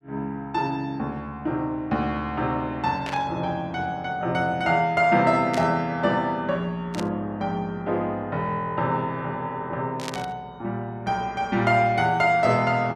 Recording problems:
static burst; 4 times, first at 3 s; peak -4 dB vs average level

